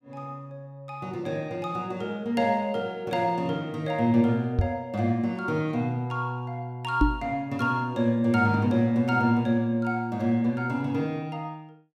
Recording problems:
microphone thump; at 4.5 s and at 7 s; peak +8 dB vs average level

